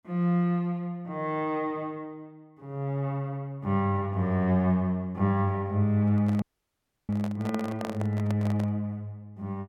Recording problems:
microphone handling noise; from 6 to 9 s; peak -4 dB vs average level
dropout; at 6.5 s for 0.5 s

